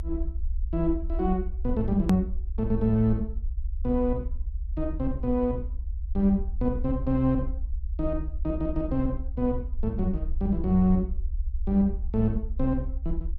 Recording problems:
rumble; below 66 Hz, SNR 6 dB
click at an edit; at 2 s

